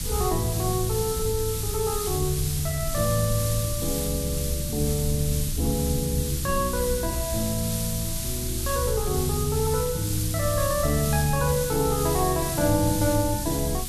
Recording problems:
hiss; slope +3 dB per octave, SNR 4 dB
low-frequency rumble; below 110 Hz, SNR 9 dB

